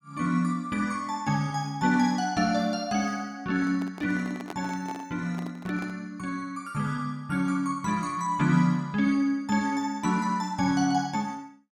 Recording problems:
microphone handling noise; from 3.5 to 6 s; peak -6 dB vs average level

